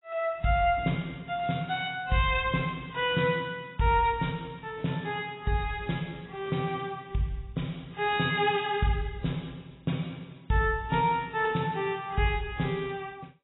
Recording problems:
lossy compression; AAC, log-spectral distance 4 dB, nothing above 3.4 kHz

